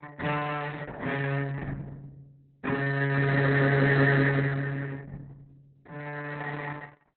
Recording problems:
lossy codec; MP2, then Opus, log-spectral distance 4 dB, nothing above 4.1 kHz

